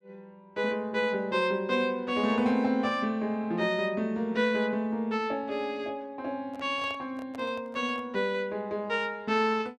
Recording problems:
microphone handling noise; from 6.5 to 8 s; peak -12 dB vs average level

